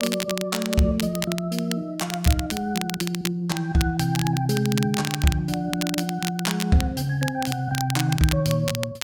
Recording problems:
crackling; vinyl, SNR 7 dB

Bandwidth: 17 kHz